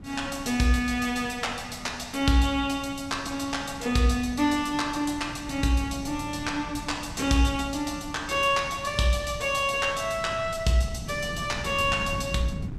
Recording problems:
wind noise; below 200 Hz, SNR 14 dB

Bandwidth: 15 kHz